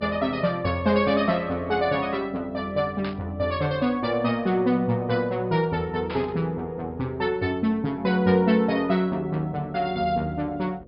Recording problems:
low-pass filter; nothing above 5.5 kHz
hum; 50 Hz, harmonics up to 600 Hz, SNR 25 dB
burst of static; at 3 s and at 6 s; peak -7 dB vs average level

